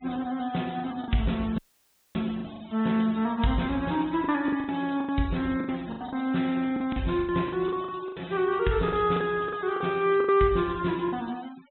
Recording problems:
low-pass filter; nothing above 3.9 kHz
denoising artefacts; signal-to-artefact ratio 21 dB
packet loss; 11% of the sound replaced, filled with the last packet
audio cutting out; at 1.5 s for 0.5 s

